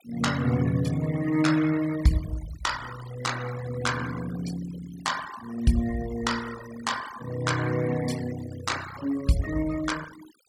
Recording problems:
noise reduction artefacts; signal-to-artefact ratio 13 dB

